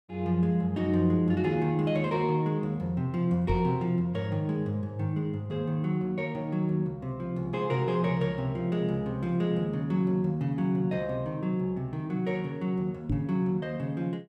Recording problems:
microphone bump; at 3.5 s and at 13 s; peak +2 dB vs average level

